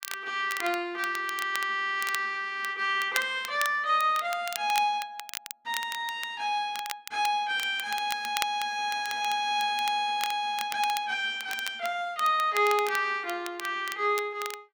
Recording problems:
crackle; vinyl, SNR 11 dB

